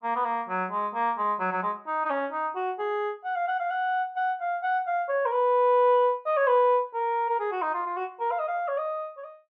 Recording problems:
none

